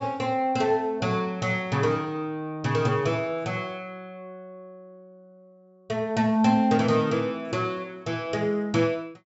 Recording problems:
treble cut off; nothing above 8 kHz

